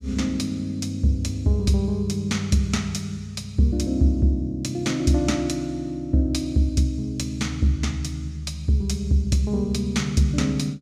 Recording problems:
none

